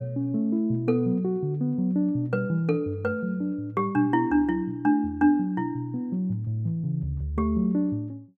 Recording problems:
none

